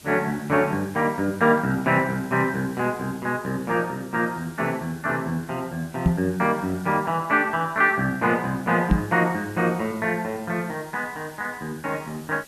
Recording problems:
hiss; SNR 22 dB
knock on the microphone; at 6 s and at 9 s; peak +8 dB vs average level

